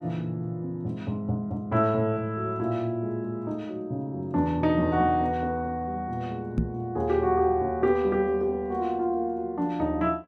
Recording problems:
microphone thump; at 6.5 s; peak +5 dB vs average level

